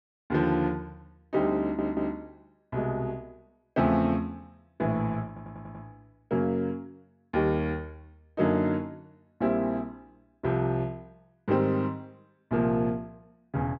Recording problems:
stutter; at 1.5 s and at 5.5 s

